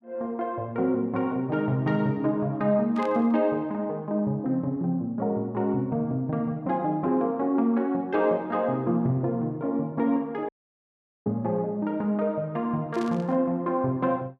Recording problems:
burst of static; at 3 s and at 13 s; peak -13 dB vs average level
audio cutting out; at 10 s for 1 s

